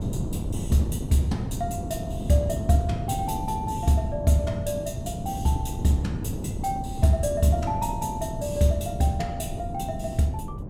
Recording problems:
wind noise; below 230 Hz, SNR 6 dB

